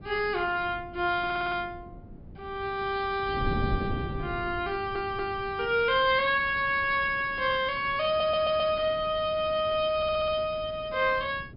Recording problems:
treble missing; nothing above 5.5 kHz
wind on the microphone; below 230 Hz, SNR 14 dB
audio stuttering; 4 times, first at 1.5 s

